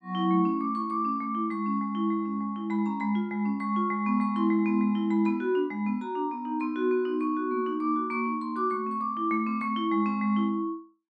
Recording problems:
none

